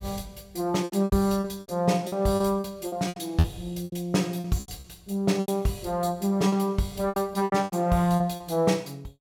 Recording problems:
lost packets; 14% of the sound replaced, filled with repeated pitch periods

